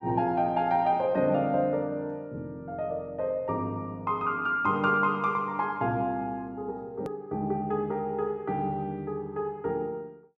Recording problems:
hard cut with a click; at 7 s

